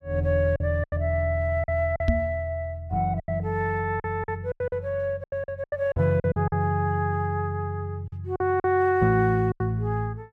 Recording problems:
lost packets; 10% of the sound replaced, filled with silence
knock on the microphone; at 2 s; peak +5 dB vs average level

